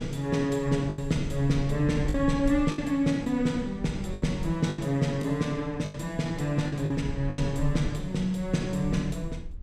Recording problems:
low-frequency rumble; below 62 Hz, SNR 12 dB
packet loss; 7% of the sound replaced, filled with the last packet

